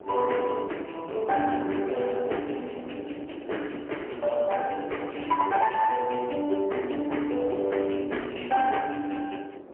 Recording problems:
phone line; 260 Hz to 3.2 kHz, AMR-NB, then MP3
distortion; soft clipping, signal-to-distortion ratio 13 dB
wind on the microphone; below 760 Hz, SNR 15 dB

